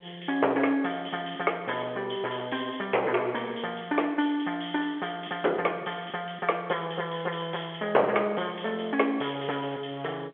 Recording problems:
telephone audio; 320 Hz to 3.4 kHz, G.711
distortion; hard clipping, uneven, signal-to-distortion ratio 16 dB

